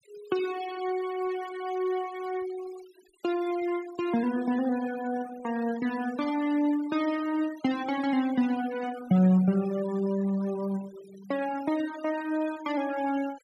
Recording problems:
noise reduction artefacts; signal-to-artefact ratio 18 dB

